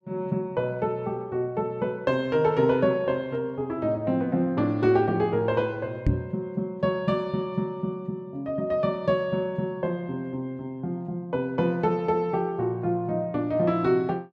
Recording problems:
knock on the microphone; at 6 s; peak +6 dB vs average level

